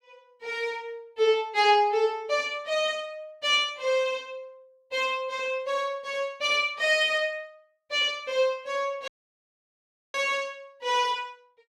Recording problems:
dropout; at 9 s for 1 s

